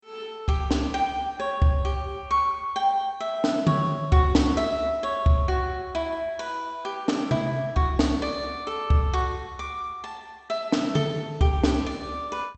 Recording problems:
lossy compression; MP2, log-spectral distance 2 dB, nothing above 8 kHz

